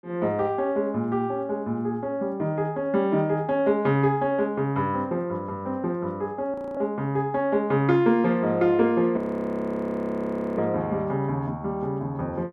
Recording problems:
audio freezing; at 6.5 s and at 9 s for 1.5 s

